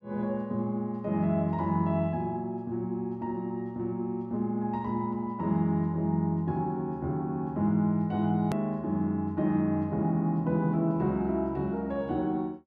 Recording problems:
edit click; at 8.5 s

